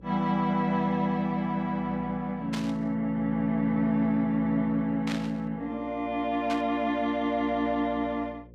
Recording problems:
mains hum; 60 Hz, harmonics up to 540 Hz, SNR 21 dB
burst of static; at 2.5 s, at 5 s and at 6.5 s; peak -4 dB vs average level

